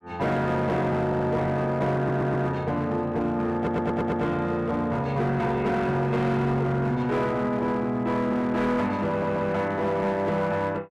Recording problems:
distorted audio; hard clipping, uneven, signal-to-distortion ratio 11 dB
audio stuttering; 4 times, first at 1 s

